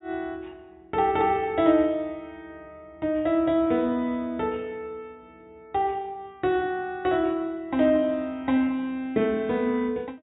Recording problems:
treble cut off; nothing above 4 kHz

